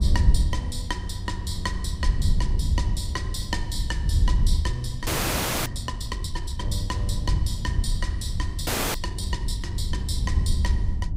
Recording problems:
wind on the microphone; below 84 Hz, SNR -5 dB
audio freezing; at 5 s for 0.5 s and at 8.5 s

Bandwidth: 15.5 kHz